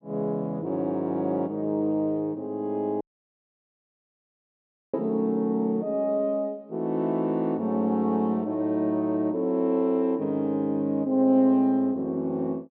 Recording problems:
dropout; at 3 s for 2 s

